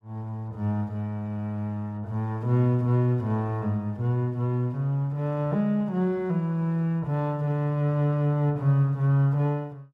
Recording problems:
none

